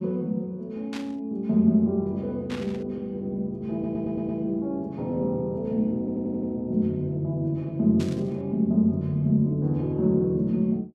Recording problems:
burst of static; at 1 s, at 2.5 s and at 8 s; peak -9 dB vs average level
audio stuttering; at 3.5 s and at 6 s

